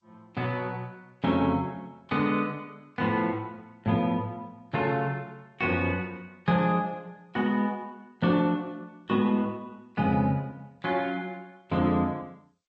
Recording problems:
lossy codec; Vorbis, then G.722, log-spectral distance 2 dB

